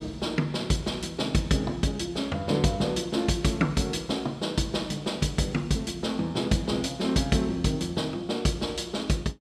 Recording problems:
none

